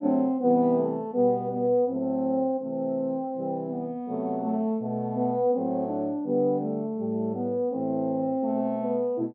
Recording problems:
none

